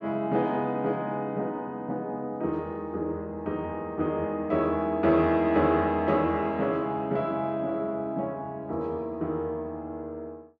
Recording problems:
none

